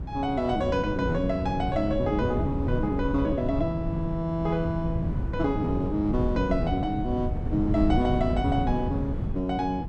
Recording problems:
wind on the microphone; below 170 Hz, SNR 3 dB

